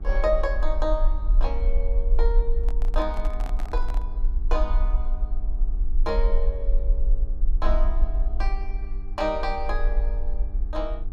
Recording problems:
hum; 50 Hz, harmonics up to 1.2 kHz, SNR 16 dB
low-frequency rumble; below 42 Hz, strongest tone 22 Hz, SNR -4 dB
microphone handling noise; from 2.5 to 4 s; peak -5 dB vs average level

